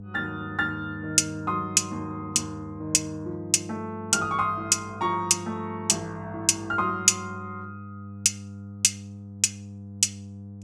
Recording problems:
hum; 50 Hz, harmonics up to 700 Hz, SNR 15 dB

